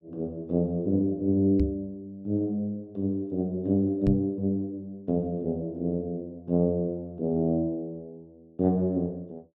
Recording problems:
knock on the microphone; at 1.5 s and at 4 s; peak +4 dB vs average level

